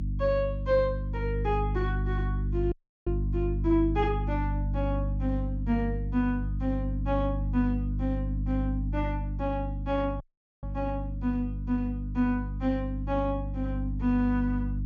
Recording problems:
treble missing; nothing above 7.3 kHz
hum; 50 Hz, harmonics up to 300 Hz, SNR 1 dB
dropout; at 2.5 s and at 10 s

